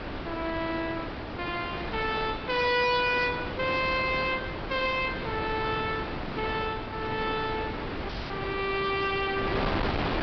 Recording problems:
treble missing; nothing above 5.5 kHz
codec artefacts; MP3, log-spectral distance 3 dB
distortion; hard clipping, uneven, signal-to-distortion ratio 11 dB
wind noise; below 1.4 kHz, SNR 5 dB
dropout; at 8 s

